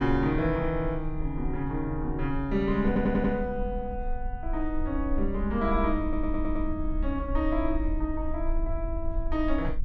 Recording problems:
low-frequency rumble; below 50 Hz, strongest tone 20 Hz, SNR 6 dB
stutter; at 3 s and at 6 s

